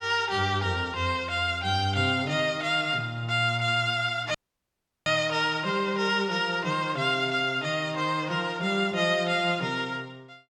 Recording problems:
audio cutting out; at 4.5 s for 0.5 s

